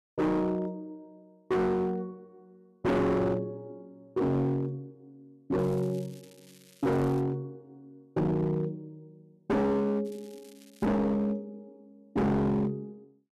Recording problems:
distortion; hard clipping, signal-to-distortion ratio 6 dB
crackling; from 5.5 to 7 s and at 10 s; loose cable, SNR 27 dB

